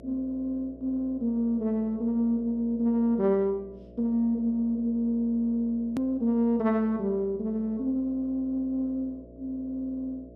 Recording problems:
hum; 60 Hz, harmonics up to 660 Hz, SNR 21 dB
click at an edit; at 6 s

